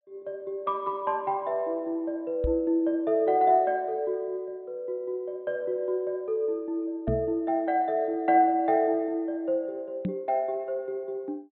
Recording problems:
low-pass filter; nothing above 4.1 kHz
microphone bump; at 2.5 s, at 7 s and at 10 s; peak +2 dB vs average level

